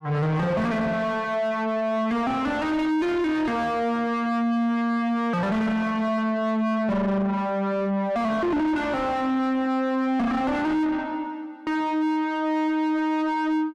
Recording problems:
distortion; soft clipping, signal-to-distortion ratio 7 dB

